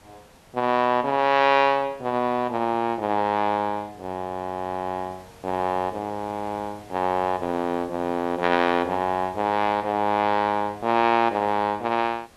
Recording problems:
background hiss; SNR 26 dB

